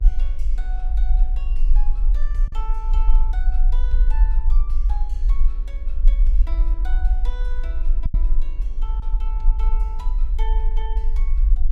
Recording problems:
hum; 50 Hz, harmonics up to 1.5 kHz, SNR 13 dB
rumble; below 40 Hz, strongest tone 22 Hz, SNR -18 dB
packet loss; 1.2% of the sound replaced, filled with silence

